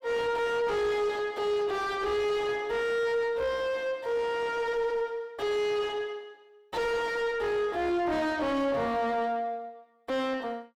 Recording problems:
distortion; soft clipping, signal-to-distortion ratio 6 dB

